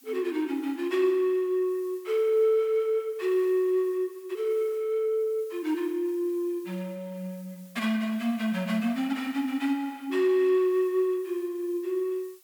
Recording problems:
hiss; slope +2 dB per octave, SNR 27 dB

